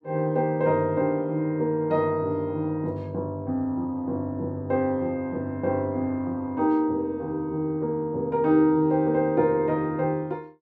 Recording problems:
none

